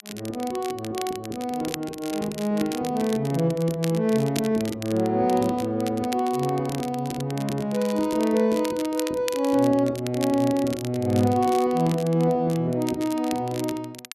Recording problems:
crackling; vinyl, SNR 15 dB

